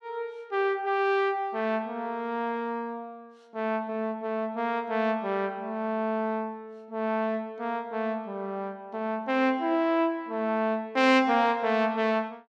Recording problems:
none

